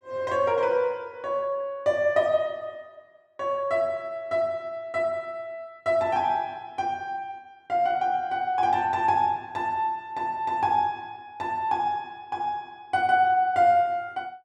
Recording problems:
none

